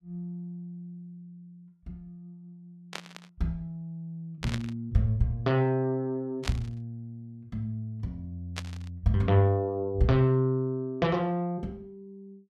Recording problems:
burst of static; 4 times, first at 3 s; peak 0 dB vs average level

